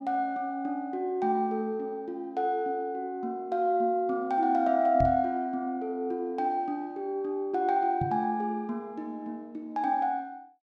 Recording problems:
microphone thump; at 5 s and at 8 s; peak +1 dB vs average level

